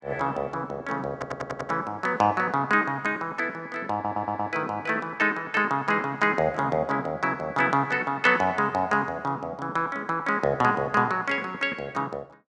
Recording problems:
audio stuttering; at 1 s and at 4 s

